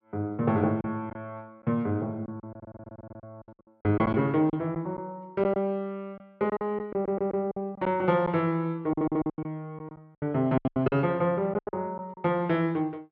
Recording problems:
lost packets; 11% of the sound replaced, filled with silence
audio stuttering; at 2.5 s, at 7 s and at 9 s

